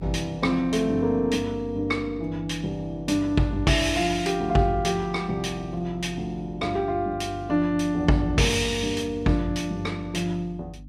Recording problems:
electrical hum; 50 Hz, harmonics up to 300 Hz, SNR 18 dB

